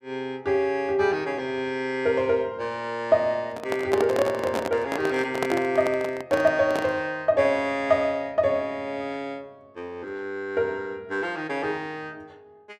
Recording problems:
handling noise; from 3.5 to 7 s; peak +2 dB vs average level

